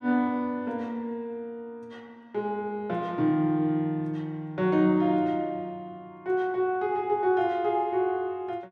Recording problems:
none

